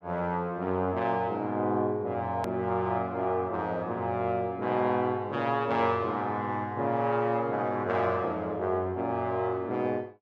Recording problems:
edit click; at 2.5 s

